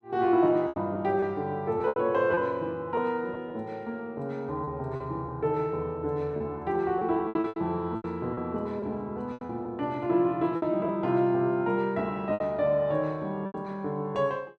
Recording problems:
packet loss; 8% of the sound replaced, filled with repeated pitch periods

